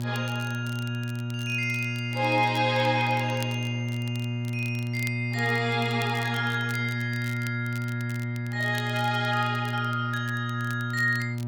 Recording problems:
electrical hum; 60 Hz, harmonics up to 960 Hz, SNR 3 dB
crackle; vinyl, SNR 19 dB

